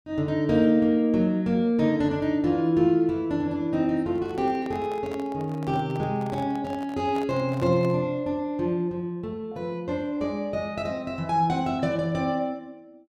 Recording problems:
microphone handling noise; from 4 to 8 s; peak -11 dB vs average level

